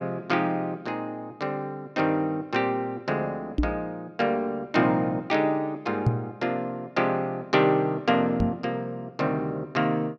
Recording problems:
microphone thump; at 3.5 s, at 6 s and at 8.5 s; peak +8 dB vs average level

